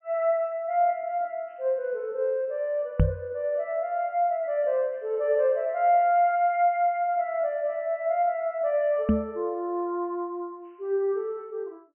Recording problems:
treble missing; nothing above 3.1 kHz
microphone thump; at 3 s and at 9 s; peak +7 dB vs average level

